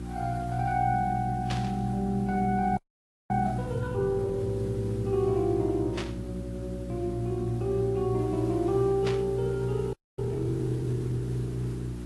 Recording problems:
codec artefacts; Vorbis, then AAC, log-spectral distance 2 dB
hum; 60 Hz, harmonics up to 360 Hz, SNR 9 dB
hiss; slope -5 dB per octave, SNR 22 dB
burst of static; at 1.5 s, at 6 s and at 9 s; peak -3 dB vs average level
audio freezing; at 3 s for 0.5 s and at 10 s

